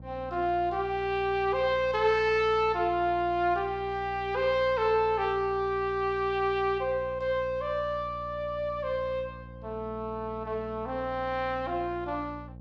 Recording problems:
electrical hum; 60 Hz, harmonics up to 840 Hz, SNR 17 dB

